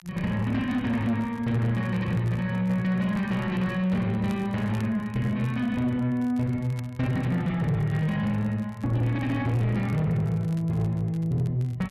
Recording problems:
distorted audio; soft clipping, signal-to-distortion ratio 12 dB
crackle; vinyl, SNR 28 dB

